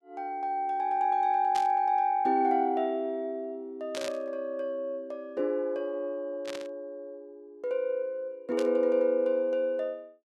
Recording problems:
burst of static; 4 times, first at 1.5 s; peak -5 dB vs average level

